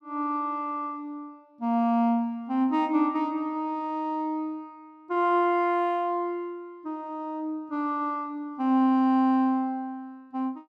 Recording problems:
none

